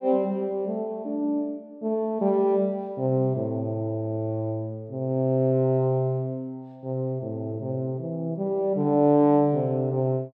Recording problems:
none

